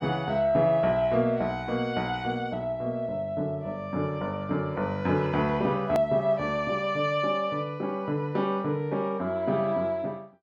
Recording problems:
hard cut with a click; at 6 s

